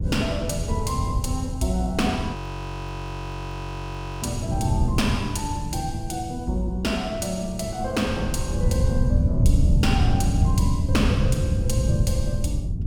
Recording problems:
wind noise; below 130 Hz, SNR -2 dB
frozen audio; at 2.5 s for 2 s

